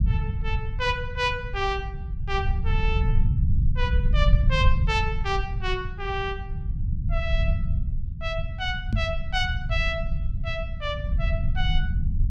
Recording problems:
rumble; below 90 Hz, SNR -2 dB
microphone bump; at 9 s; peak +7 dB vs average level

